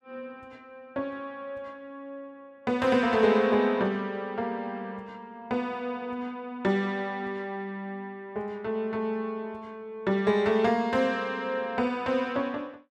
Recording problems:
none

